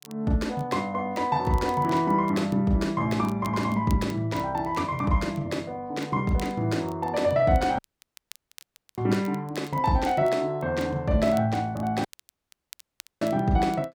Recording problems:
crackle; vinyl, SNR 25 dB
audio cutting out; at 8 s for 1 s and at 12 s for 1 s

